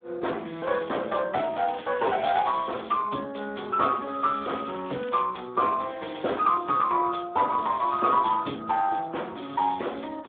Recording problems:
phone line; 220 Hz to 3.2 kHz, Speex
crackling; from 1.5 to 2.5 s and at 4.5 s; loose cable, SNR 19 dB

